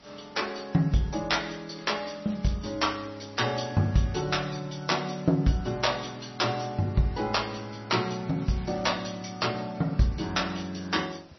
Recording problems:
lossy compression; MP3, log-spectral distance 9 dB, nothing above 5.8 kHz
hiss; slope -3 dB per octave, SNR 25 dB
crackle; at 1.5 s and at 8.5 s; loose cable, SNR 25 dB

